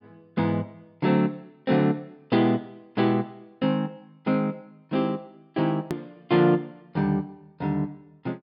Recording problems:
treble missing; nothing above 5.5 kHz
hard cut with a click; at 6 s

